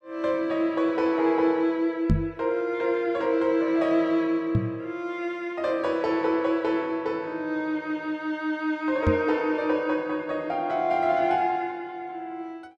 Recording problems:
microphone bump; at 2 s, at 4.5 s and at 9 s; peak +7 dB vs average level

